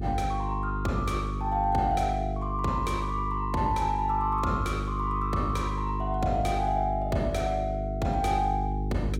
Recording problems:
mains hum; 50 Hz, harmonics up to 450 Hz, SNR 4 dB

